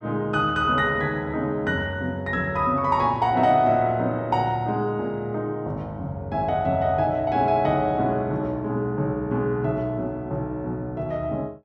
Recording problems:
none

